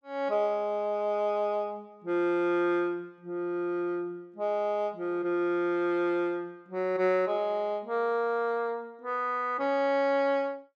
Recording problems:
none

